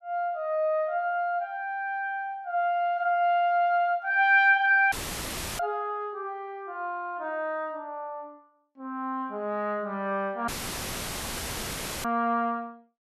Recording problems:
audio cutting out; at 5 s for 0.5 s and at 10 s for 1.5 s; filled with static

